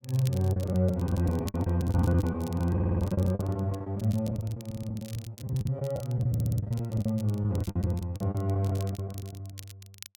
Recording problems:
crackling; vinyl, SNR 21 dB
lost packets; 18% of the sound replaced, filled with the last packet
audio stuttering; at 2.5 s, at 4.5 s and at 6.5 s

